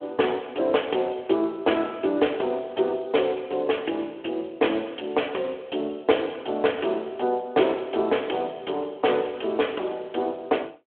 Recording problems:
phone line; 300 Hz to 3.3 kHz, Speex

